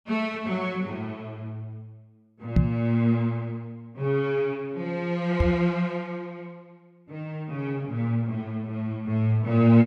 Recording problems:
microphone thump; at 2.5 s and at 5.5 s; peak +9 dB vs average level

